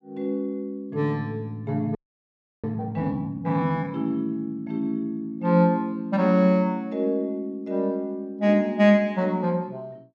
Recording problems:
audio freezing; at 2 s for 0.5 s

